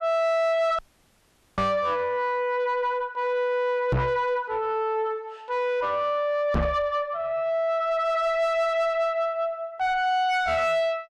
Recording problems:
distorted audio; soft clipping, signal-to-distortion ratio 7 dB
dropout; at 1 s for 1 s
microphone thump; at 1.5 s, at 4 s and at 6.5 s; peak +5 dB vs average level

